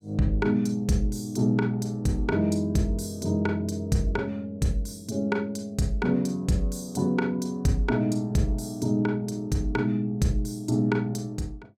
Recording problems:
none

